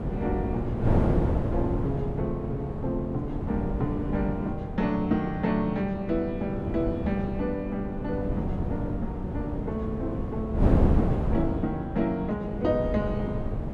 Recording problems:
wind noise; below 290 Hz, SNR 0 dB

